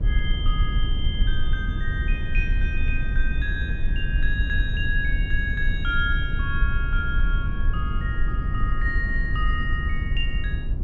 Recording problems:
low-frequency rumble; below 64 Hz, SNR -4 dB

